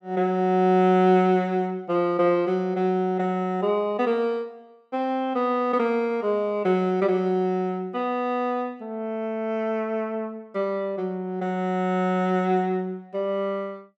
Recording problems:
none

